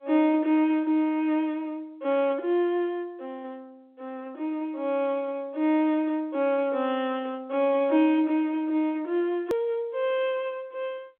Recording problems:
phone line; 260 Hz to 3.4 kHz, G.711
click at an edit; at 9.5 s

